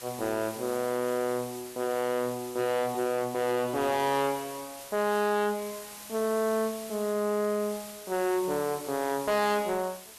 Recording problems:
distorted audio; soft clipping, signal-to-distortion ratio 6 dB
background hiss; slope 0 dB per octave, SNR 14 dB

